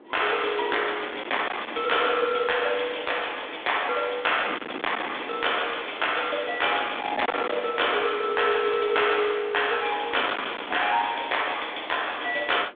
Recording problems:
telephone audio; 240 Hz to 3.6 kHz, G.726
distortion; hard clipping, signal-to-distortion ratio 12 dB
wind noise; below 1.9 kHz, SNR 15 dB

